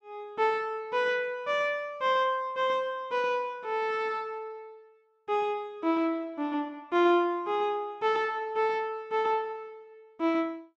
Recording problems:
none

